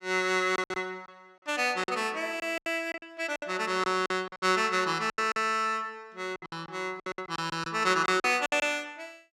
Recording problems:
lost packets; 13% of the sound replaced, filled with silence

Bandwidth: 14.5 kHz